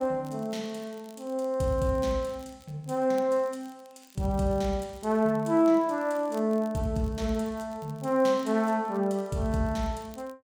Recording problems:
crackle; vinyl, SNR 29 dB

